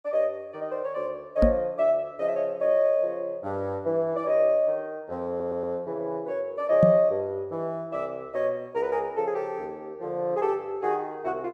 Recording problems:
microphone bump; at 1.5 s and at 7 s; peak +8 dB vs average level
stutter; at 5.5 s

